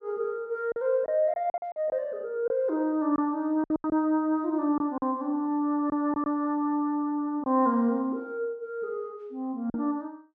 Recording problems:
packet loss; 6% of the sound replaced, filled with silence

